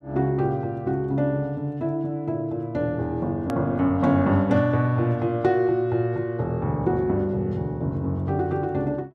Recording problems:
click at an edit; at 3.5 s

